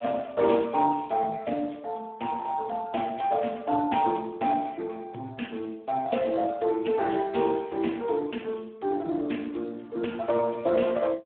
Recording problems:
phone line; 190 Hz to 3.5 kHz, Speex

